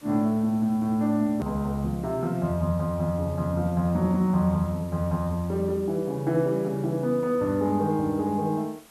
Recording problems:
hiss; slope -3 dB per octave, SNR 26 dB
click at an edit; at 1.5 s

